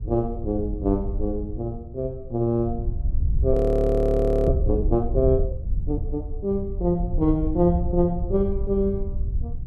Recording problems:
wind on the microphone; below 80 Hz, SNR 4 dB
frozen audio; at 3.5 s for 1 s

